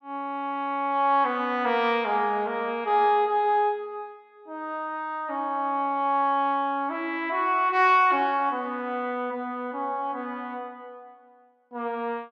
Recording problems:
none

